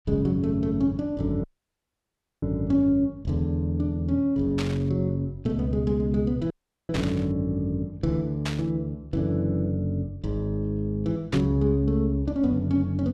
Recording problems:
dropout; at 1.5 s for 1 s and at 6.5 s
static burst; 4 times, first at 4.5 s; peak -3 dB vs average level

